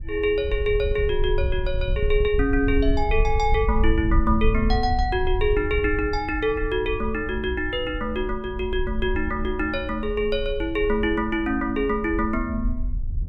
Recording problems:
wind noise; below 64 Hz, SNR 5 dB

